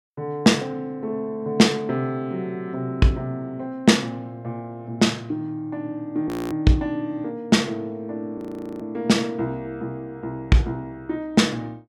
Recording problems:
frozen audio; at 6.5 s and at 8.5 s

